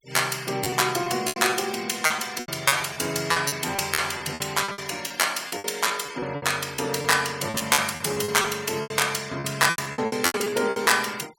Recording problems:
noise reduction artefacts; signal-to-artefact ratio 20 dB
lost packets; 16% of the sound replaced, filled with repeated pitch periods

